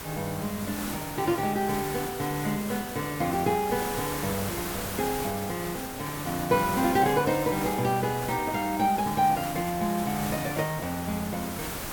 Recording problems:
background hiss; slope -4 dB per octave, SNR 7 dB

